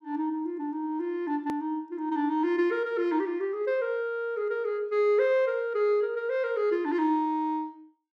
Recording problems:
hard cut with a click; at 1.5 s

